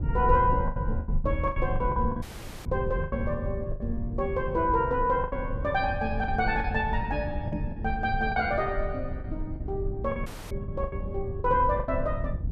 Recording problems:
low-frequency rumble; below 110 Hz, SNR 5 dB
packet loss; 10% of the sound replaced, filled with the last packet
audio cutting out; at 2 s and at 10 s
knock on the microphone; at 7.5 s; peak -1 dB vs average level

